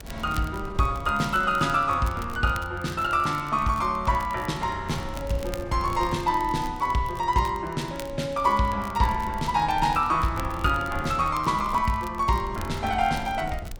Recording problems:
wind on the microphone; below 120 Hz, SNR 16 dB
crackle; vinyl, SNR 22 dB

